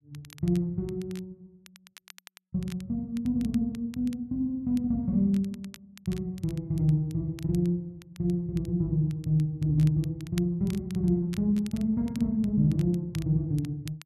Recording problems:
crackling; vinyl, SNR 24 dB

